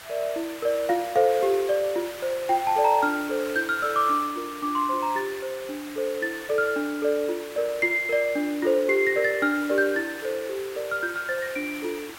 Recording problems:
background hiss; SNR 14 dB

